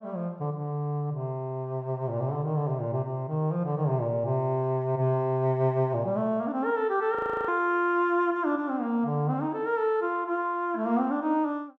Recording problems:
frozen audio; at 7 s

